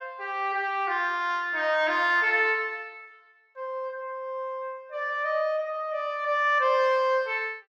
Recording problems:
treble missing; nothing above 7.9 kHz

